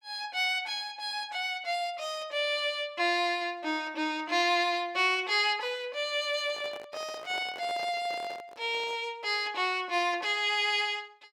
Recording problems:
handling noise; from 6.5 to 9 s; peak -9 dB vs average level

